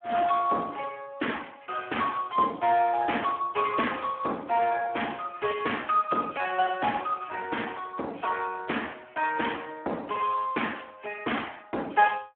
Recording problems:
telephone audio; 240 Hz to 3.3 kHz, Speex

